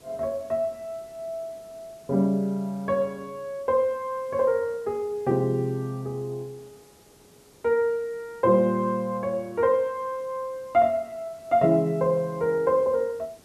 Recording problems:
background hiss; SNR 28 dB

